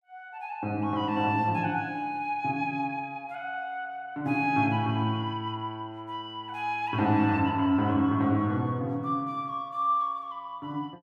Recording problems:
none

